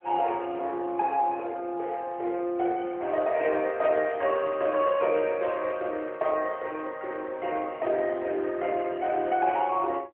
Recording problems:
telephone audio; 280 Hz to 3.3 kHz, AMR-NB

